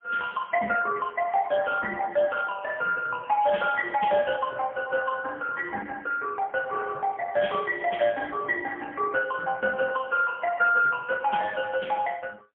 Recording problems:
phone line; 220 Hz to 2.8 kHz, AMR-NB, then MP3

